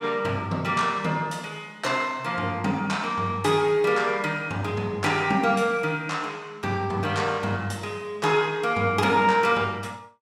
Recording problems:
none

